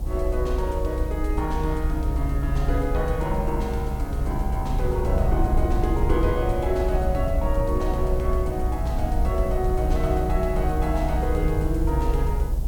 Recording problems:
background hiss; slope 0 dB per octave, SNR 22 dB
low-frequency rumble; below 66 Hz, SNR -1 dB

